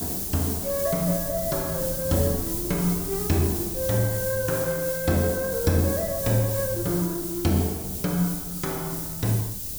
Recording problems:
hiss; SNR 3 dB
wind on the microphone; below 180 Hz, SNR 15 dB

